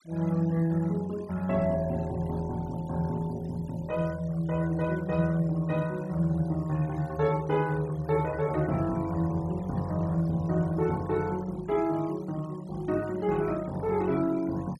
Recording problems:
denoising artefacts; signal-to-artefact ratio 22 dB

